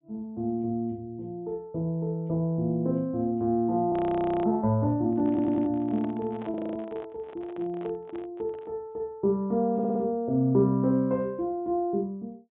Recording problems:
treble cut off; nothing above 3.6 kHz
audio freezing; at 4 s for 0.5 s and at 6.5 s
microphone handling noise; from 5 to 8.5 s; peak -10 dB vs average level
audio stuttering; at 5.5 s and at 9.5 s

